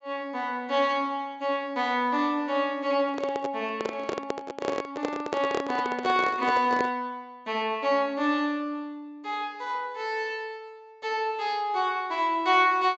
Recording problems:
treble cut off; nothing above 8 kHz
handling noise; from 3 to 7 s; peak +2 dB vs average level

